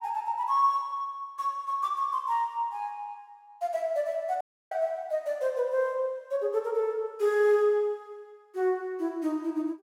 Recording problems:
audio cutting out; at 4.5 s

